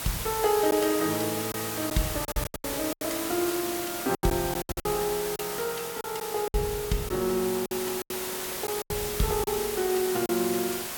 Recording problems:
background hiss; slope -1 dB per octave, SNR 4 dB
packet loss; 10% of the sound replaced, filled with silence

